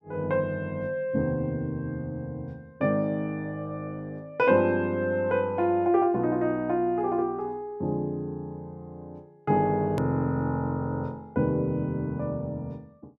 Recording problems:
edit click; at 10 s

